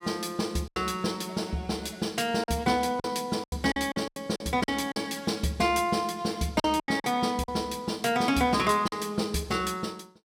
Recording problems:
lost packets; 8% of the sound replaced, filled with silence

